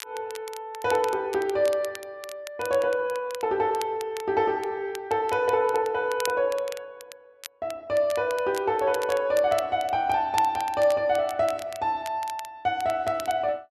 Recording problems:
crackle; vinyl, SNR 17 dB

